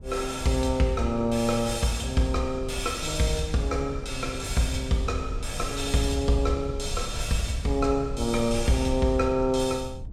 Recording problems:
low-frequency rumble; below 80 Hz, SNR 11 dB

